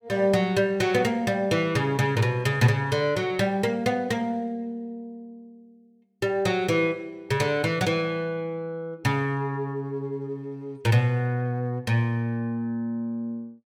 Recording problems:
none

